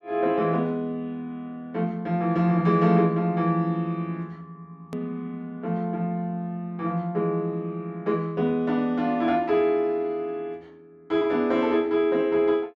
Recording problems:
click at an edit; at 5 s

